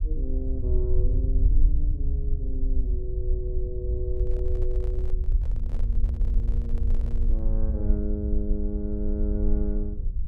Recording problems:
rumble; below 56 Hz, SNR -8 dB
handling noise; from 4 to 7.5 s; peak -9 dB vs average level

